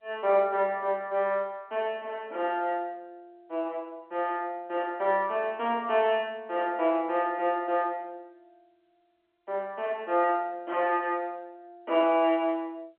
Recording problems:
phone line; 260 Hz to 3.3 kHz, G.711

